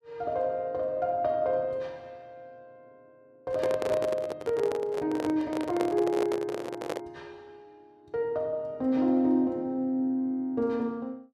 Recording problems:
microphone handling noise; from 3.5 to 7 s; peak +1 dB vs average level

